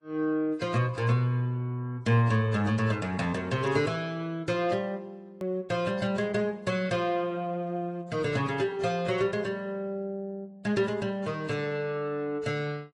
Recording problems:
codec artefacts; Vorbis, then AAC, log-spectral distance 2 dB
edit click; at 5.5 s

